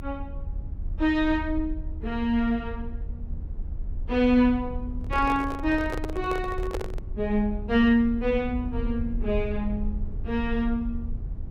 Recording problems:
rumble; below 74 Hz, SNR 9 dB
microphone handling noise; from 5 to 7 s; peak -2 dB vs average level

